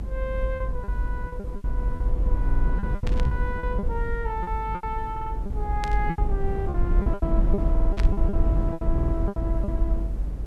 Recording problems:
hiss; slope -3 dB per octave, SNR 27 dB
rumble; below 66 Hz, SNR -6 dB
packet loss; 13% of the sound replaced, filled with repeated pitch periods
stutter; 4 times, first at 2.5 s
burst of static; at 3 s, at 6 s and at 8 s; peak +2 dB vs average level

